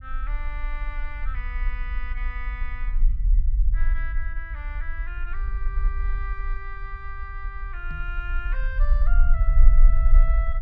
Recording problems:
low-frequency rumble; below 42 Hz, strongest tone 22 Hz, SNR -11 dB
microphone bump; at 8 s; peak +4 dB vs average level

